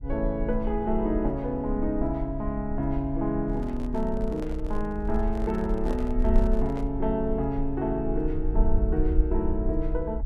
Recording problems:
low-frequency rumble; below 52 Hz, SNR 4 dB
handling noise; from 3.5 to 7 s; peak -6 dB vs average level

